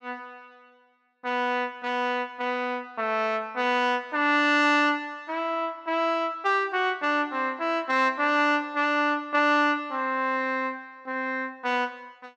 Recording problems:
none

